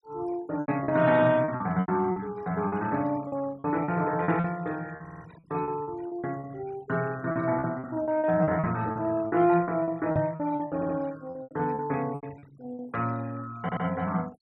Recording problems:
noise reduction artefacts; signal-to-artefact ratio 23 dB
lost packets; 13% of the sound replaced, filled with repeated pitch periods
stutter; at 5 s, at 11 s and at 14 s
microphone bump; at 10 s; peak +2 dB vs average level

